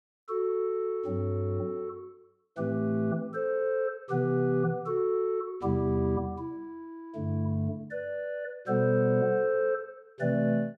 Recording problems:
none

